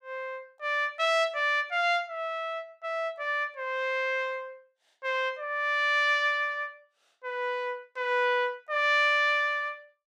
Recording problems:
none

